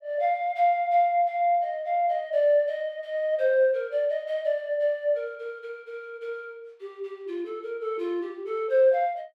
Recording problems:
none

